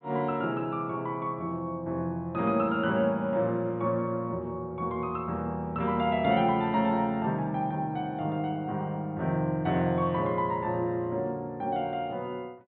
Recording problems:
treble missing; nothing above 4 kHz

